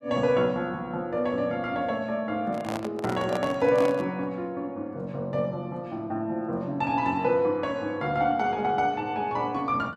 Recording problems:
handling noise; from 2.5 to 4 s; peak 0 dB vs average level

